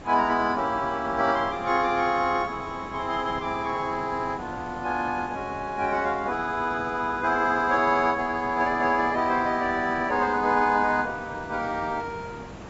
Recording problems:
lossy codec; AAC, log-spectral distance 4 dB, nothing above 7.6 kHz
background hiss; slope -7 dB per octave, SNR 16 dB

